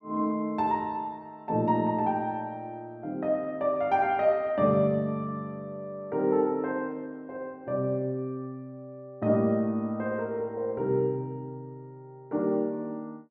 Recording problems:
none

